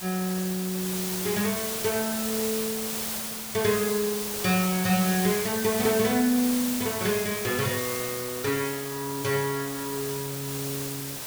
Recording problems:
background hiss; slope -1 dB per octave, SNR 3 dB

